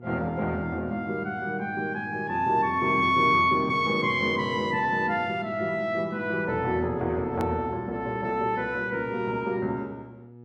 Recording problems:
mains hum; 60 Hz, harmonics up to 960 Hz, SNR 21 dB
click at an edit; at 7.5 s

